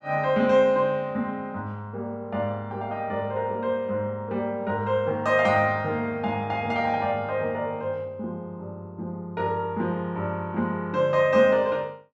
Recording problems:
none

